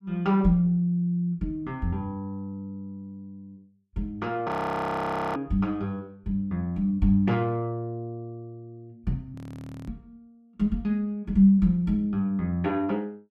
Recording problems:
audio freezing; at 4.5 s for 1 s and at 9.5 s for 0.5 s

